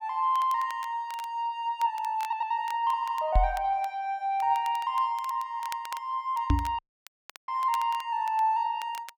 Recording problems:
crackle; vinyl, SNR 20 dB
stutter; at 2 s, at 3 s and at 5.5 s
microphone thump; at 3.5 s and at 6.5 s; peak +7 dB vs average level
dropout; at 7 s for 0.5 s

